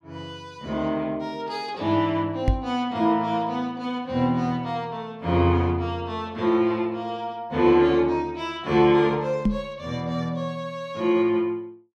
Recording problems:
microphone bump; at 2.5 s and at 9.5 s; peak +5 dB vs average level

